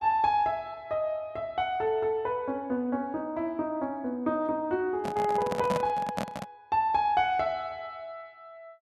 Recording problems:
handling noise; from 5 to 6.5 s; peak +2 dB vs average level

